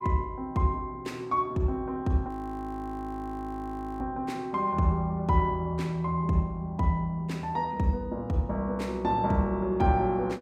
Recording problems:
audio freezing; at 2.5 s for 1.5 s

